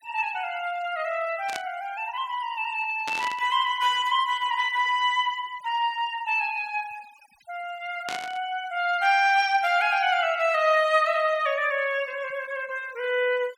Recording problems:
noise reduction artefacts; signal-to-artefact ratio 23 dB
static burst; at 1.5 s, at 3 s and at 8 s; peak -5 dB vs average level

